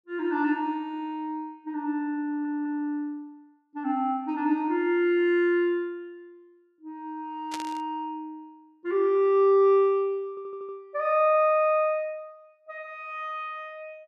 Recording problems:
audio stuttering; at 2.5 s and at 10 s
static burst; at 7.5 s; peak -6 dB vs average level

